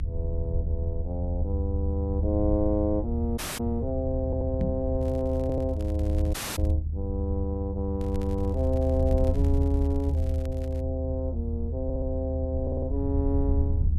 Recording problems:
rumble; below 80 Hz, strongest tone 76 Hz, SNR -1 dB
dropout; at 3.5 s and at 6.5 s
audio stuttering; 4 times, first at 4 s
knock on the microphone; at 4.5 s; peak +4 dB vs average level
crackling; from 5 to 6.5 s and from 8 to 11 s; loose cable, SNR 24 dB

